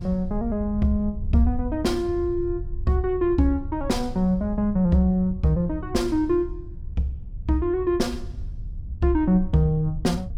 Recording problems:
wind on the microphone; below 80 Hz, SNR 10 dB

